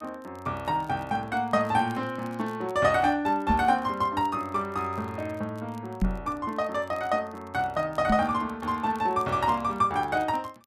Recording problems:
crackling; vinyl, SNR 30 dB
microphone thump; at 3.5 s, at 6 s and at 8 s; peak +5 dB vs average level

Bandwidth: 14.5 kHz